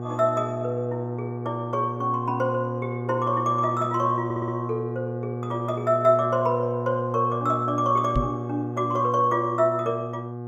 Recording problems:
electrical hum; 60 Hz, harmonics up to 1.2 kHz, SNR 6 dB
audio stuttering; at 4.5 s
knock on the microphone; at 8 s; peak +3 dB vs average level

